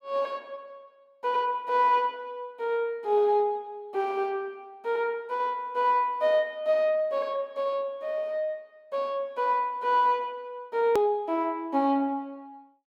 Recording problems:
click at an edit; at 11 s

